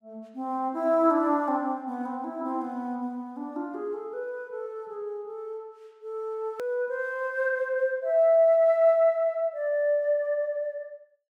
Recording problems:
hard cut with a click; at 6.5 s

